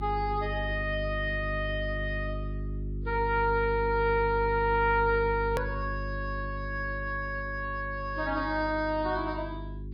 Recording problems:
lossy compression; MP3, log-spectral distance 2 dB, nothing above 17.1 kHz
hum; 50 Hz, harmonics up to 400 Hz, SNR 7 dB
hard cut with a click; at 5.5 s

